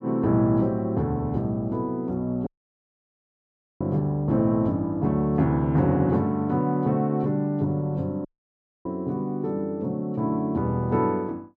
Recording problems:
audio cutting out; at 2.5 s for 1.5 s and at 8.5 s for 0.5 s

